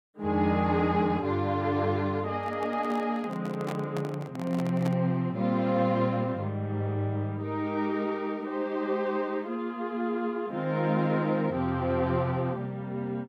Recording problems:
microphone handling noise; from 2.5 to 5 s; peak -4 dB vs average level

